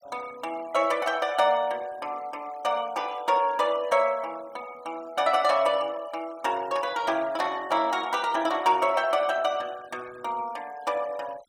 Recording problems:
denoising artefacts; signal-to-artefact ratio 23 dB

